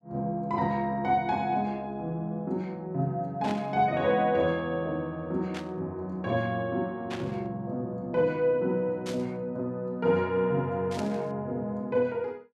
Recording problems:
burst of static; 5 times, first at 3.5 s; peak -6 dB vs average level

